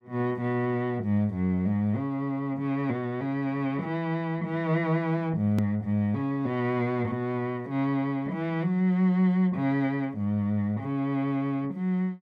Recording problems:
edit click; at 5.5 s

